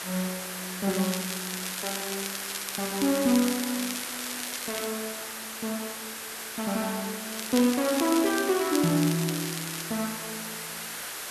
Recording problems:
background hiss; SNR 5 dB
crackle; from 1 to 5 s and from 7.5 to 10 s; loose cable, SNR 8 dB

